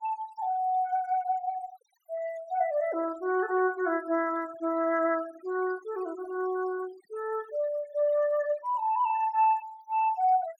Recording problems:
noise reduction artefacts; signal-to-artefact ratio 21 dB

